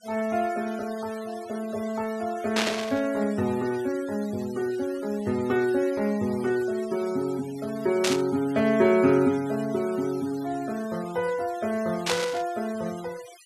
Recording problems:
noise reduction artefacts; signal-to-artefact ratio 19 dB
static burst; at 2.5 s, at 8 s and at 12 s; peak +5 dB vs average level

